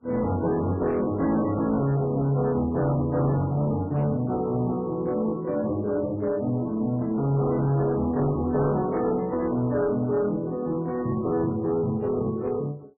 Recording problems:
lossy codec; MP3, log-spectral distance 2 dB, nothing above 10.7 kHz
distorted audio; hard clipping, uneven, signal-to-distortion ratio 11 dB

